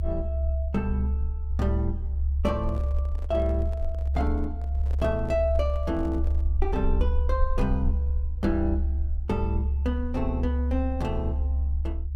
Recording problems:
low-frequency rumble; below 70 Hz, strongest tone 70 Hz, SNR -2 dB
handling noise; from 2.5 to 6.5 s; peak -10 dB vs average level

